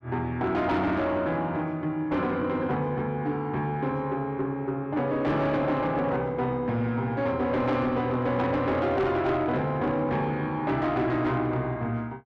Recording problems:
distortion; soft clipping, signal-to-distortion ratio 11 dB

